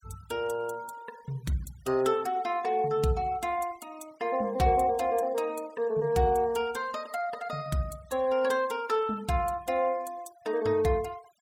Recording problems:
denoising artefacts; signal-to-artefact ratio 25 dB

